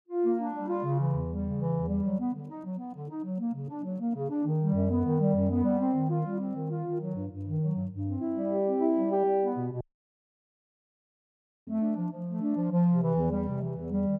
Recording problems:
audio cutting out; at 10 s for 2 s

